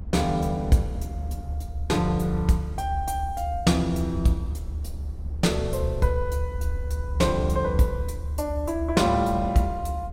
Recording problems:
low-frequency rumble; below 76 Hz, strongest tone 74 Hz, SNR 7 dB
wind noise; below 220 Hz, SNR 18 dB

